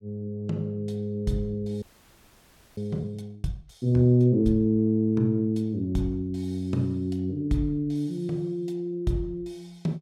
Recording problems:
frozen audio; at 2 s for 1 s

